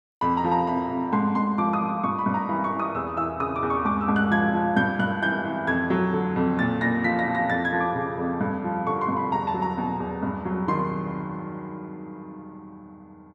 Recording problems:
none

